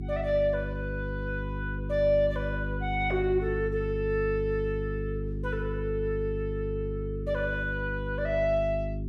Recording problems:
mains hum; 50 Hz, harmonics up to 400 Hz, SNR 4 dB

